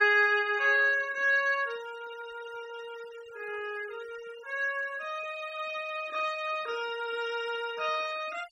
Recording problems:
noise reduction artefacts; signal-to-artefact ratio 20 dB

